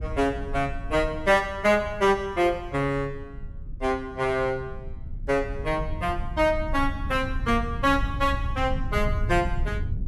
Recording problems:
low-frequency rumble; below 92 Hz, SNR 9 dB

